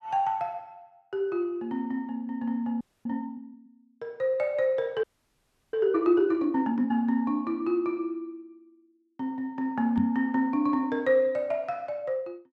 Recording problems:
audio freezing; at 3 s and at 5 s for 0.5 s
microphone thump; at 10 s; peak +1 dB vs average level

